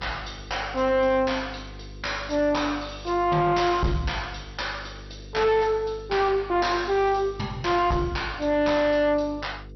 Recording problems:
lossy codec; MP2, log-spectral distance 5 dB, nothing above 5.8 kHz
distorted audio; soft clipping, signal-to-distortion ratio 7 dB
mains hum; 50 Hz, harmonics up to 500 Hz, SNR 18 dB

